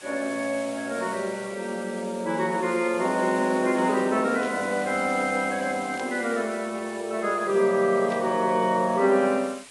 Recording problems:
codec artefacts; AAC, log-spectral distance 9 dB
hiss; SNR 17 dB
static burst; at 4.5 s, at 6 s and at 8 s; peak -11 dB vs average level

